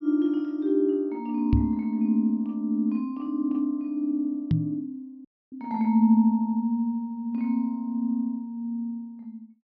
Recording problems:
low-pass filter; nothing above 6 kHz
microphone bump; at 1.5 s and at 4.5 s; peak +6 dB vs average level
audio cutting out; at 5.5 s

